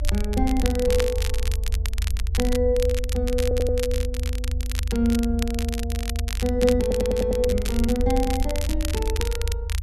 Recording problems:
rumble; below 78 Hz, SNR 2 dB
crackle; vinyl, SNR 10 dB
audio stuttering; at 3.5 s and at 7 s

